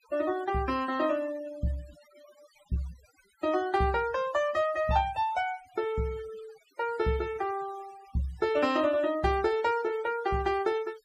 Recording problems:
denoising artefacts; signal-to-artefact ratio 19 dB

